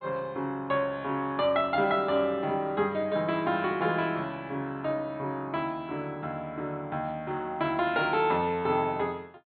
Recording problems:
low-pass filter; nothing above 4.3 kHz

